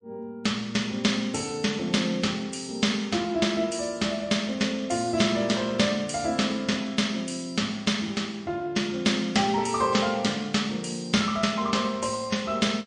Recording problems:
lossy compression; MP3, log-spectral distance 3 dB, nothing above 9.5 kHz

